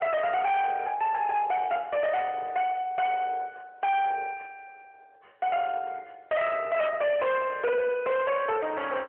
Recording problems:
phone line; 370 Hz to 3.2 kHz, AMR-NB
distortion; hard clipping, uneven, signal-to-distortion ratio 7 dB

